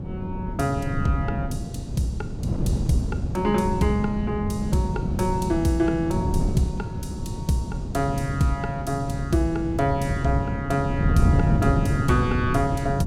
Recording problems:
wind on the microphone; below 200 Hz, SNR 2 dB

